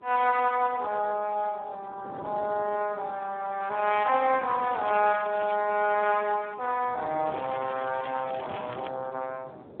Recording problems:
telephone audio; 320 Hz to 3.7 kHz, Speex
wind noise; below 550 Hz, SNR 18 dB
crackle; at 4.5 s and from 7.5 to 9 s; loose cable, SNR 17 dB

